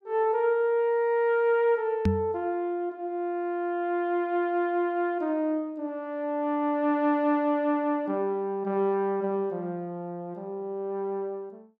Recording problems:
microphone thump; at 2 s; peak +6 dB vs average level

